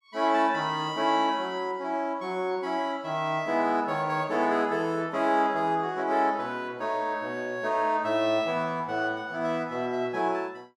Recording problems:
none

